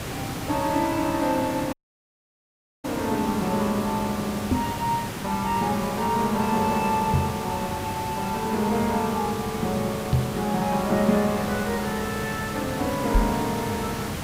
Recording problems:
background hiss; slope -4 dB per octave, SNR 6 dB
dropout; at 1.5 s for 1 s
microphone thump; 4 times, first at 4.5 s; peak +8 dB vs average level

